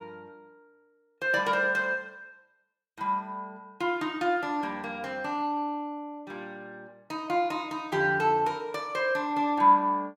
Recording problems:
none

